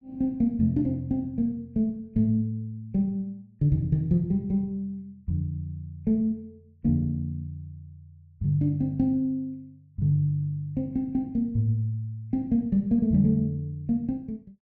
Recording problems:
none

